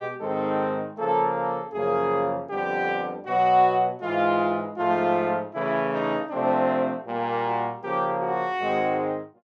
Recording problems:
none

